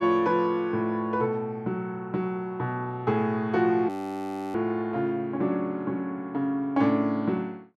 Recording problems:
frozen audio; at 4 s for 0.5 s

